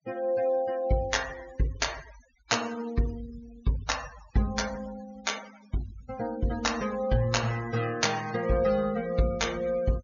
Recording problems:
low-pass filter; nothing above 6.9 kHz
noise reduction artefacts; signal-to-artefact ratio 16 dB

